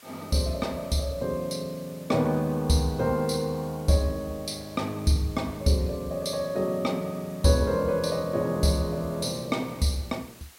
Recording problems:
hiss; slope 0 dB per octave, SNR 23 dB

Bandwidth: 16 kHz